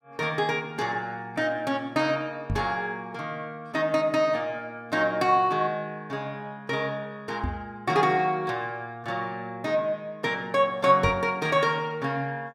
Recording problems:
microphone thump; at 2.5 s, at 7.5 s and at 11 s; peak +1 dB vs average level

